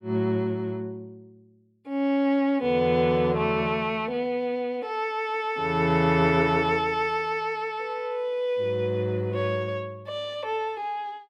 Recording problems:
none

